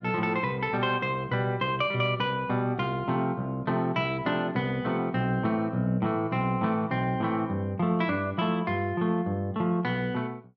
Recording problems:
none

